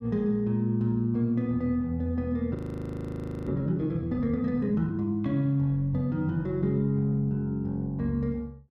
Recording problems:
frozen audio; at 2.5 s for 1 s

